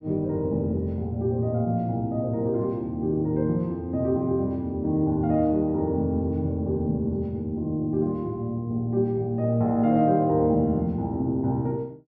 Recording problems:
none

